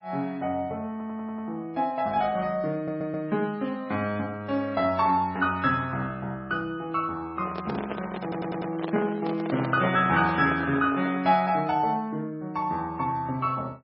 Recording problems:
lossy compression; MP3, log-spectral distance 2 dB, nothing above 4.5 kHz
audio stuttering; at 1 s, at 3 s and at 8 s
microphone handling noise; from 7.5 to 11 s; peak +1 dB vs average level

